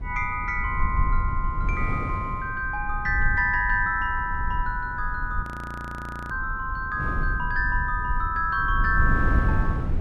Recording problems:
rumble; below 68 Hz, SNR 5 dB
wind on the microphone; below 270 Hz, SNR 10 dB
audio freezing; at 5.5 s for 1 s

